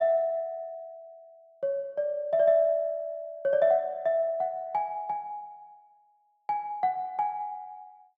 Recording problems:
none

